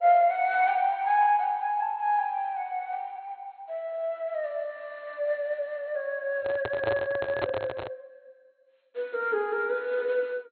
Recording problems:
lossy compression; MP2, log-spectral distance 2 dB, nothing above 4.1 kHz
handling noise; from 6.5 to 8 s; peak +2 dB vs average level

